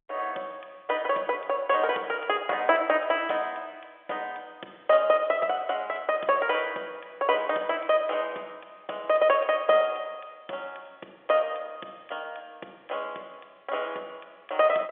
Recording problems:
phone line; 320 Hz to 3.7 kHz, G.711

